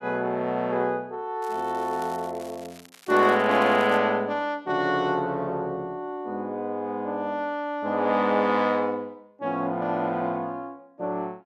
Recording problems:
crackle; from 1.5 to 4 s; loose cable, SNR 23 dB

